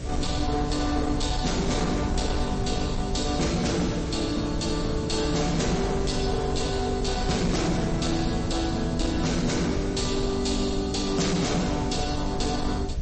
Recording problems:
codec artefacts; MP3, log-spectral distance 8 dB, nothing above 8.2 kHz
distorted audio; hard clipping, signal-to-distortion ratio 10 dB
electrical hum; 60 Hz, harmonics up to 720 Hz, SNR 13 dB
hiss; slope -1 dB per octave, SNR 19 dB
low-frequency rumble; below 100 Hz, SNR 7 dB

